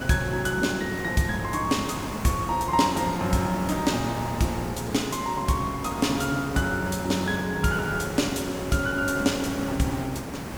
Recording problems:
background hiss; slope -6 dB per octave, SNR 9 dB

